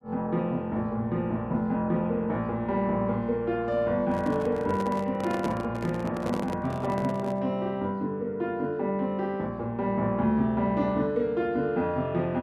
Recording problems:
microphone handling noise; from 4 to 7.5 s; peak -2 dB vs average level

